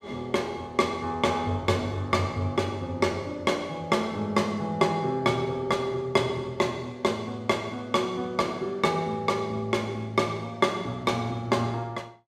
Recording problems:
none

